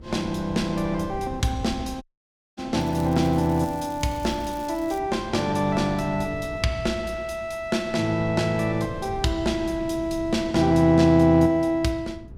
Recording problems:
wind noise; below 200 Hz, SNR 17 dB
audio cutting out; at 2 s for 0.5 s
crackle; from 3 to 5 s; loose cable, SNR 24 dB

